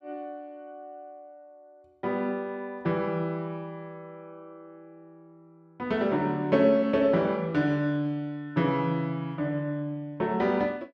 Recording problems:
none

